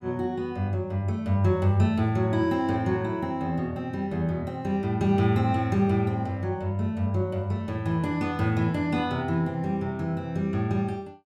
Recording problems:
none

